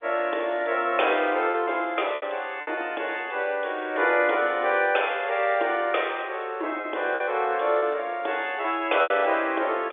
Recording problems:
telephone audio; 280 Hz to 3.6 kHz, G.711
lost packets; 4% of the sound replaced, filled with repeated pitch periods

